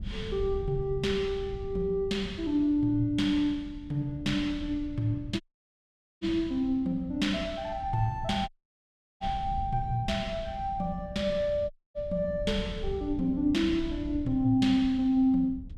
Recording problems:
wind noise; below 100 Hz, SNR 13 dB
audio cutting out; at 5.5 s for 1 s, at 8.5 s for 0.5 s and at 12 s

